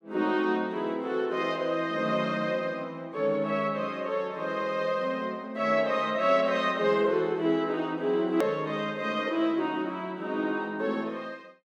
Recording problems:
click at an edit; at 8.5 s

